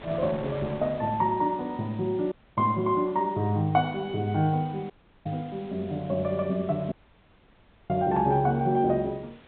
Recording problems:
treble missing; nothing above 4 kHz
hiss; SNR 27 dB
wind on the microphone; below 1.5 kHz, SNR 22 dB
dropout; at 2.5 s, at 5 s and at 7 s for 1 s

